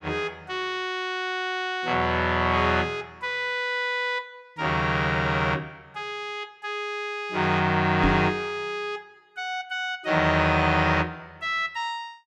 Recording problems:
knock on the microphone; at 8 s; peak +3 dB vs average level

